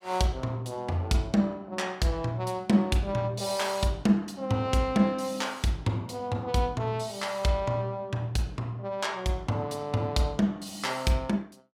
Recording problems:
none

